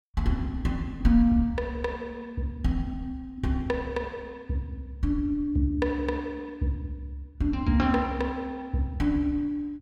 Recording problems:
none

